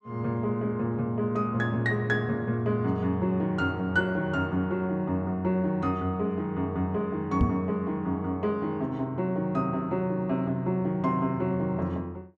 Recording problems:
knock on the microphone; at 7.5 s; peak +7 dB vs average level

